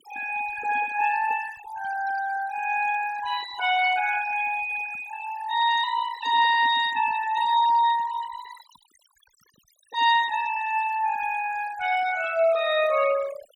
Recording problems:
noise reduction artefacts; signal-to-artefact ratio 14 dB

